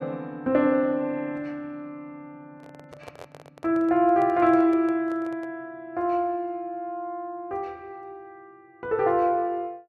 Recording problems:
handling noise; from 2.5 to 5.5 s; peak -12 dB vs average level

